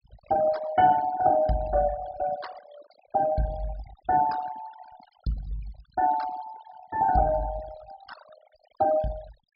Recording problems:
treble cut off; nothing above 5.5 kHz
denoising artefacts; signal-to-artefact ratio 17 dB

